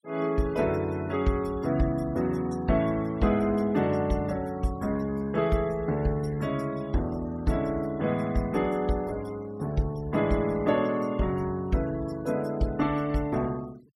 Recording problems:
noise reduction artefacts; signal-to-artefact ratio 24 dB

